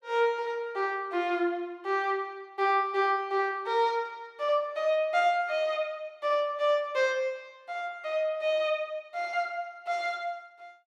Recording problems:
none

